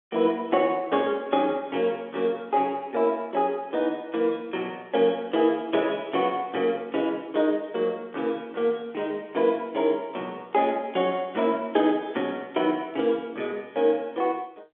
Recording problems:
telephone audio; 260 Hz to 3.7 kHz, G.711

